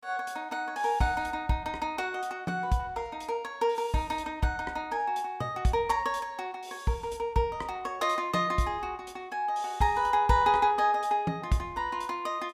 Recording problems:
none

